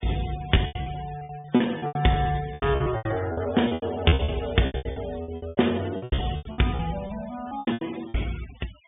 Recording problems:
treble cut off; nothing above 3.6 kHz
denoising artefacts; signal-to-artefact ratio 17 dB
lost packets; 22% of the sound replaced, filled with repeated pitch periods

